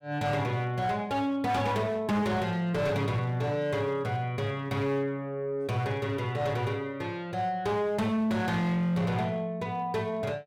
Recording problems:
distortion; hard clipping, signal-to-distortion ratio 11 dB

